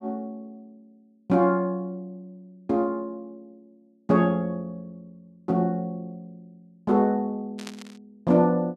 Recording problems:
static burst; at 7.5 s; peak -9 dB vs average level

